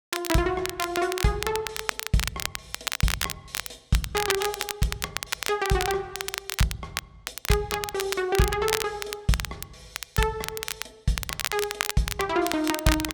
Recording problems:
crackle; vinyl, SNR 3 dB

